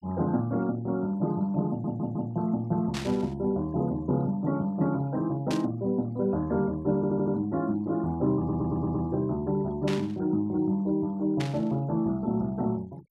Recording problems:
denoising artefacts; signal-to-artefact ratio 27 dB
audio stuttering; at 1.5 s, at 7 s and at 8.5 s
burst of static; 4 times, first at 3 s; peak -4 dB vs average level

